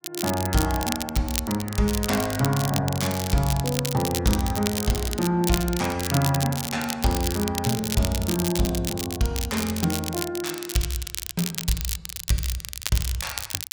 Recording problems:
crackle; vinyl, SNR 5 dB

